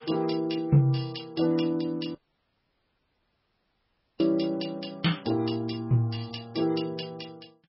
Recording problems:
lossy codec; MP3, log-spectral distance 5 dB, nothing above 5.2 kHz
dropout; at 2 s for 2 s

